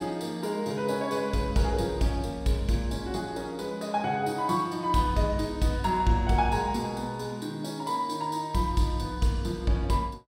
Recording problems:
none

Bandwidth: 16 kHz